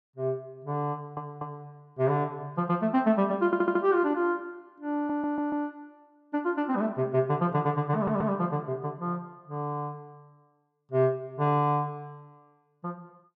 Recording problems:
stutter; 4 times, first at 1 s

